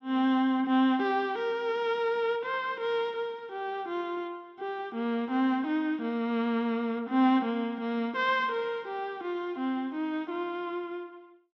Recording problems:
none

